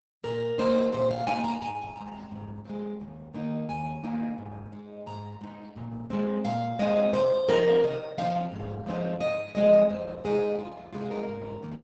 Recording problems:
lossy compression; Opus, log-spectral distance 3 dB, nothing above 8 kHz

